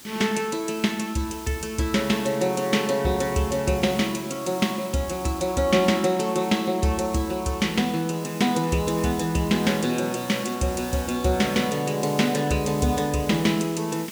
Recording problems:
hiss; SNR 16 dB

